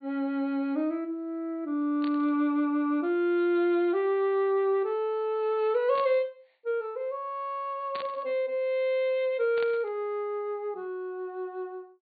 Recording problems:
treble cut off; nothing above 4.6 kHz
static burst; 4 times, first at 2 s; peak -8 dB vs average level

